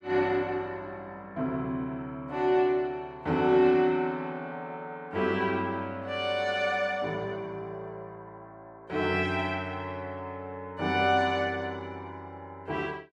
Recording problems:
none

